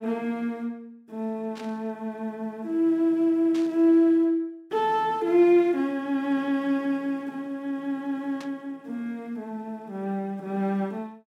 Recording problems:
static burst; at 1.5 s, at 3.5 s and at 8.5 s; peak -12 dB vs average level

